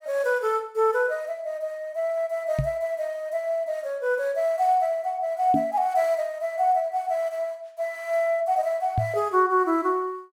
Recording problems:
microphone bump; at 2.5 s, at 5.5 s and at 9 s; peak +3 dB vs average level

